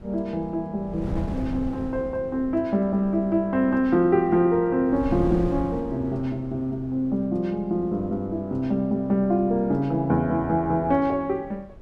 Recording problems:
wind on the microphone; below 200 Hz, SNR 15 dB

